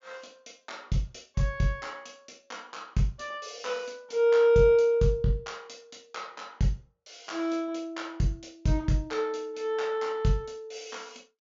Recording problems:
treble cut off; nothing above 7.3 kHz

